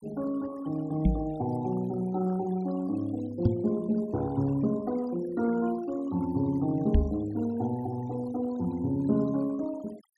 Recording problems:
denoising artefacts; signal-to-artefact ratio 21 dB
knock on the microphone; at 1 s, at 3.5 s and at 7 s; peak +9 dB vs average level

